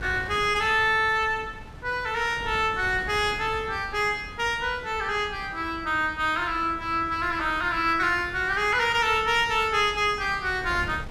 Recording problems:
wind on the microphone; below 390 Hz, SNR 17 dB

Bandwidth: 15 kHz